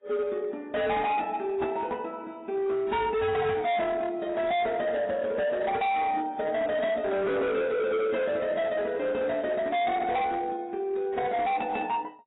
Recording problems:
lossy codec; AAC, log-spectral distance 2 dB, nothing above 3.8 kHz
distorted audio; hard clipping, signal-to-distortion ratio 7 dB

